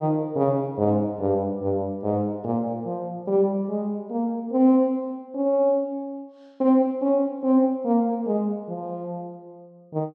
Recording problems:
none

